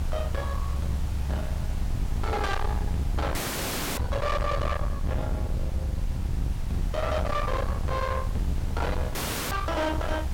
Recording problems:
distorted audio; soft clipping, signal-to-distortion ratio 7 dB
background hiss; SNR 16 dB
rumble; below 130 Hz, SNR 1 dB
wind noise; below 310 Hz, SNR 13 dB
audio cutting out; at 3.5 s for 0.5 s and at 9 s

